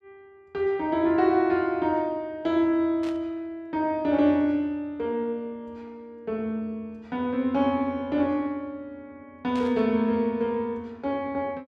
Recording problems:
burst of static; at 3 s and at 9.5 s; peak -12 dB vs average level

